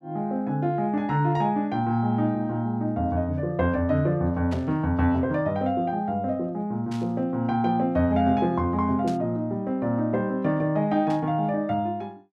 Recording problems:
static burst; 4 times, first at 4.5 s; peak -12 dB vs average level

